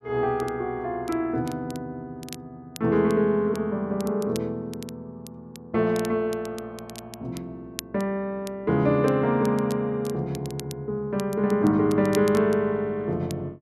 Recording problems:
crackle; vinyl, SNR 20 dB

